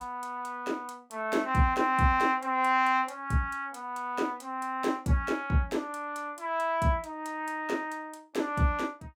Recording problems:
none

